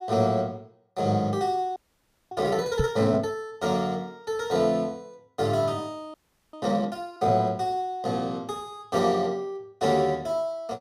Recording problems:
audio freezing; at 2 s for 0.5 s and at 6 s
microphone thump; at 3 s; peak +3 dB vs average level

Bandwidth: 15 kHz